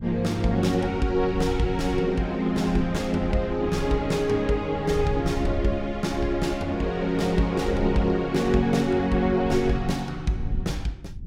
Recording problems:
low-frequency rumble; below 100 Hz, SNR 11 dB

